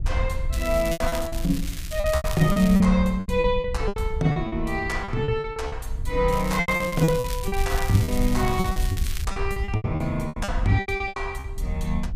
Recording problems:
wind on the microphone; below 72 Hz, SNR 6 dB
lost packets; 16% of the sound replaced, filled with repeated pitch periods
crackling; from 0.5 to 3 s and from 6.5 to 9 s; loose cable, SNR 12 dB

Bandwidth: 15 kHz